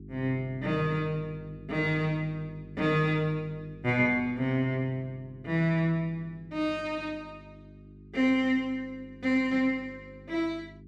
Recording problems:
electrical hum; 50 Hz, harmonics up to 400 Hz, SNR 19 dB

